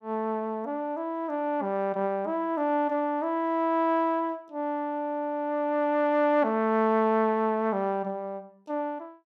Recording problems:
none

